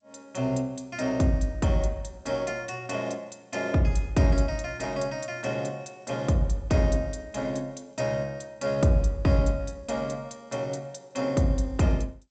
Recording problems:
lossy codec; G.722, log-spectral distance 3 dB, nothing above 7.6 kHz

